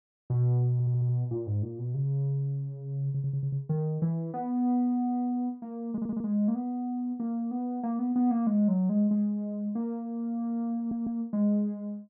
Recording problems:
stutter; 4 times, first at 0.5 s

